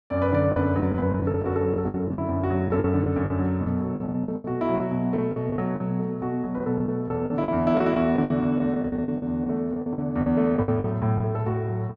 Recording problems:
lost packets; 14% of the sound replaced, filled with the last packet

